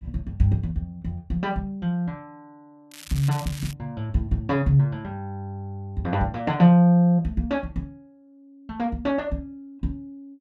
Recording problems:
crackle; at 3 s; loose cable, SNR 16 dB

